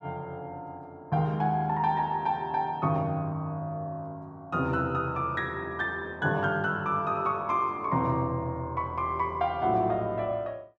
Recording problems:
none

